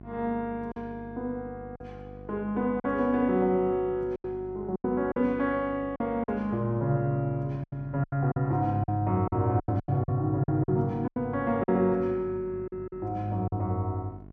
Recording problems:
electrical hum; 50 Hz, harmonics up to 1.1 kHz, SNR 17 dB
packet loss; 8% of the sound replaced, filled with silence

